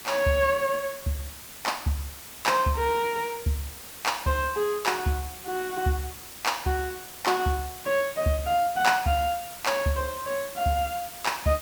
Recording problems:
background hiss; slope -1 dB per octave, SNR 12 dB

